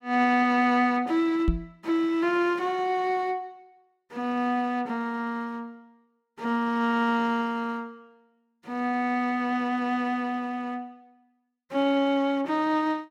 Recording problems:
microphone bump; at 1.5 s; peak +5 dB vs average level

